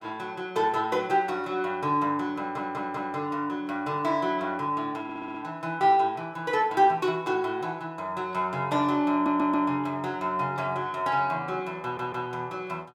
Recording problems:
audio stuttering; 4 times, first at 2.5 s

